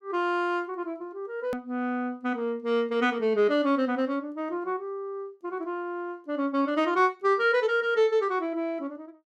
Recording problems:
click at an edit; at 1.5 s

